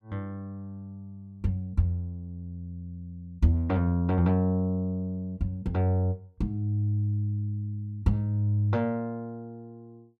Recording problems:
none

